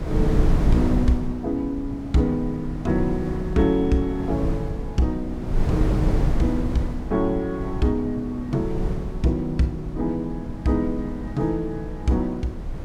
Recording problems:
wind on the microphone; below 150 Hz, SNR 4 dB

